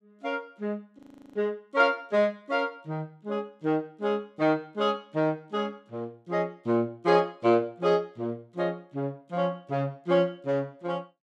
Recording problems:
audio freezing; at 1 s

